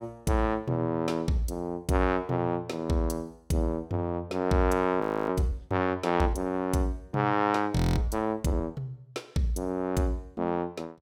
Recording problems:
frozen audio; at 5 s and at 8 s

